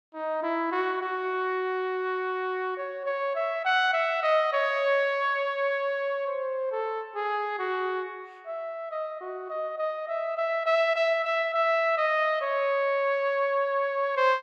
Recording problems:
none

